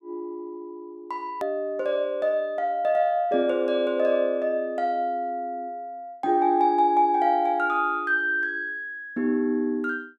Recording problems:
edit click; at 1.5 s

